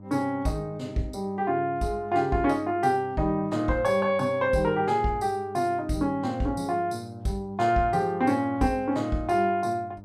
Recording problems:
hum; 50 Hz, harmonics up to 900 Hz, SNR 20 dB

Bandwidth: 14.5 kHz